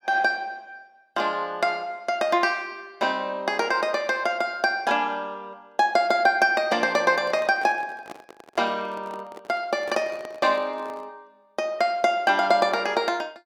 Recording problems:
microphone handling noise; from 7 to 11 s; peak -10 dB vs average level

